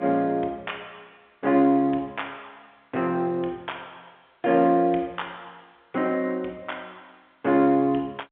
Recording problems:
telephone audio; 300 Hz to 4 kHz, G.711

